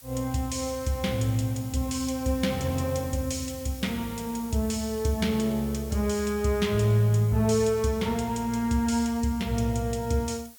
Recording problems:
hiss; slope +2 dB per octave, SNR 19 dB

